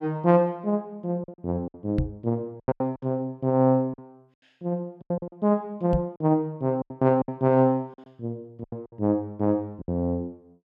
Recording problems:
lost packets; 10% of the sound replaced, filled with silence
knock on the microphone; at 2 s and at 6 s; peak +4 dB vs average level

